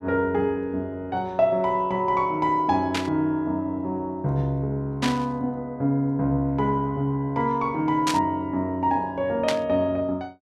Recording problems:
static burst; 4 times, first at 3 s; peak +1 dB vs average level

